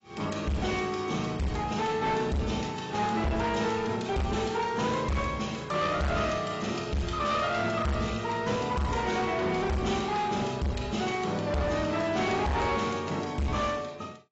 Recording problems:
lossy compression; AAC, log-spectral distance 4 dB, nothing above 7.6 kHz
distorted audio; hard clipping, uneven, signal-to-distortion ratio 6 dB

